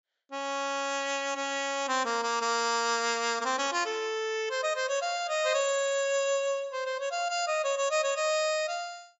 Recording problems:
treble cut off; nothing above 8 kHz

